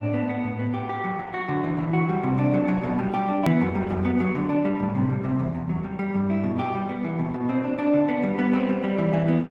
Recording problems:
codec artefacts; AAC, then Opus, log-spectral distance 2 dB, nothing above 18.3 kHz
edit click; at 3.5 s

